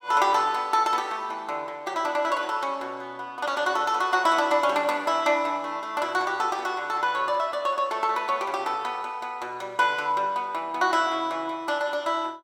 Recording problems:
none

